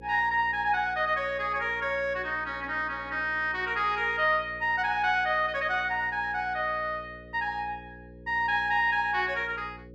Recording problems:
hum; 60 Hz, harmonics up to 540 Hz, SNR 21 dB

